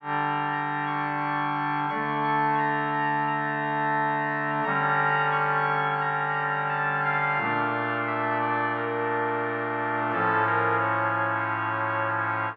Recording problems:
none

